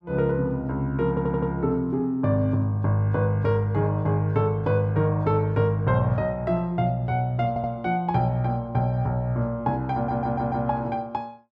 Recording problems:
stutter; at 1 s, at 7.5 s and at 10 s

